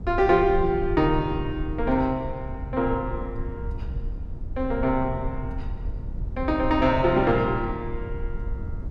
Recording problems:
low-frequency rumble; below 84 Hz, SNR 10 dB

